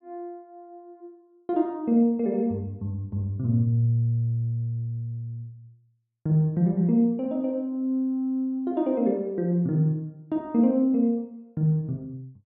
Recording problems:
none

